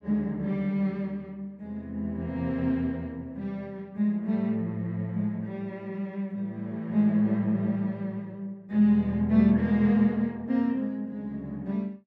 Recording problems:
none

